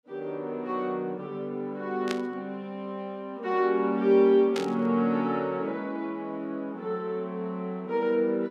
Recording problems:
burst of static; at 2 s and at 4.5 s; peak -2 dB vs average level

